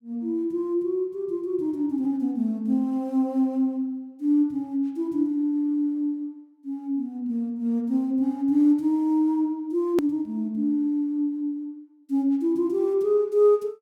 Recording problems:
hard cut with a click; at 10 s

